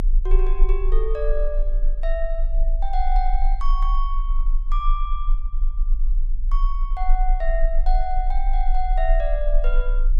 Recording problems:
rumble; below 32 Hz, strongest tone 28 Hz, SNR -5 dB

